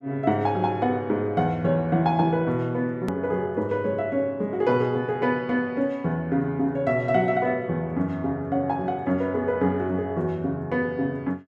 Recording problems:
hard cut with a click; at 3 s

